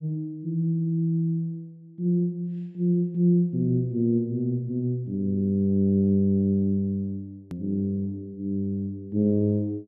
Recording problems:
click at an edit; at 7.5 s

